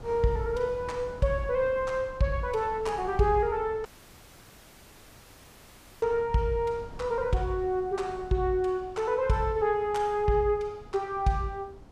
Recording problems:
wind noise; below 320 Hz, SNR 19 dB
audio cutting out; at 4 s for 2 s

